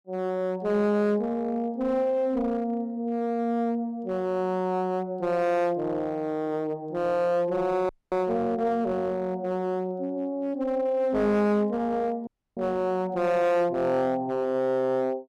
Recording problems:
distorted audio; hard clipping, uneven, signal-to-distortion ratio 9 dB
audio cutting out; at 8 s and at 12 s

